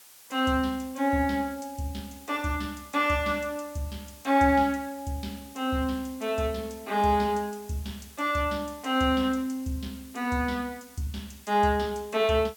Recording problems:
hiss; slope +1 dB per octave, SNR 21 dB

